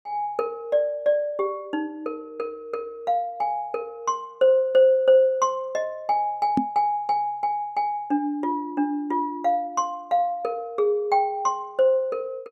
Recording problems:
knock on the microphone; at 6.5 s; peak +5 dB vs average level

